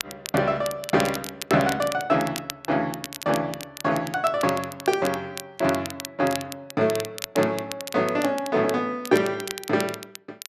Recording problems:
crackle; vinyl, SNR 11 dB

